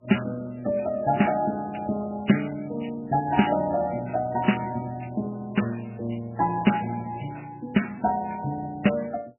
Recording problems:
lossy codec; Vorbis, then MP3, log-spectral distance 5 dB, nothing above 2.9 kHz

